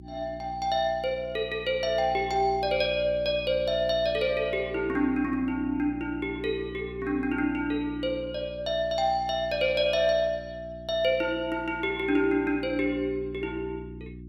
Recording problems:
electrical hum; 60 Hz, harmonics up to 360 Hz, SNR 15 dB

